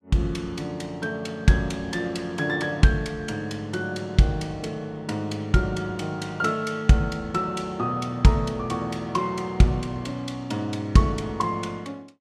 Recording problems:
none

